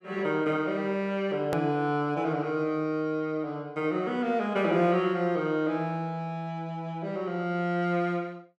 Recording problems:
hard cut with a click; at 1.5 s

